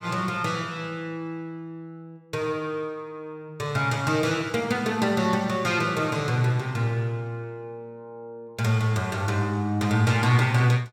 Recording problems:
none

